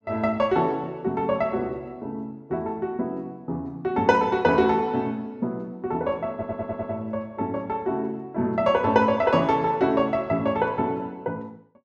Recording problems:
audio stuttering; at 6.5 s

